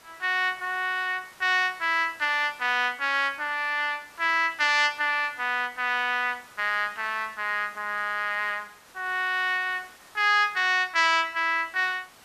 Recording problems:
hiss; SNR 26 dB

